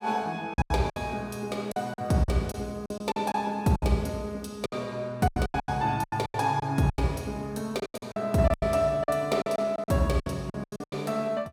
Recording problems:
lost packets; 16% of the sound replaced, filled with silence

